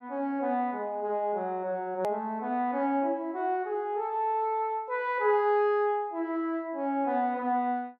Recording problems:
hard cut with a click; at 2 s

